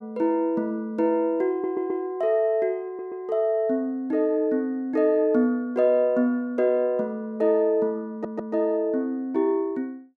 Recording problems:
stutter; at 1.5 s, at 3 s and at 8 s

